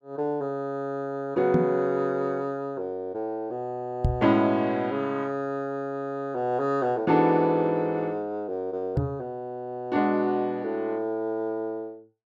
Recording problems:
microphone thump; at 1.5 s, at 4 s and at 9 s; peak +7 dB vs average level

